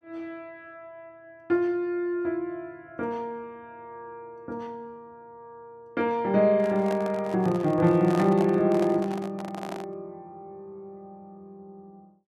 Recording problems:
microphone handling noise; from 6.5 to 10 s; peak -3 dB vs average level

